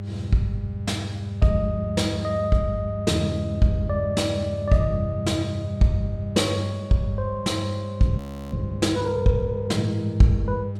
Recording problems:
mains hum; 50 Hz, harmonics up to 600 Hz, SNR 7 dB
audio freezing; at 8 s

